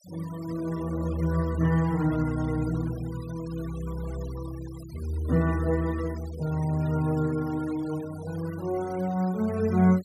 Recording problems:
noise reduction artefacts; signal-to-artefact ratio 20 dB

